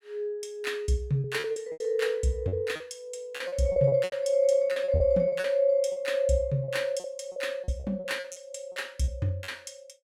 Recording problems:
lost packets; 13% of the sound replaced, filled with repeated pitch periods

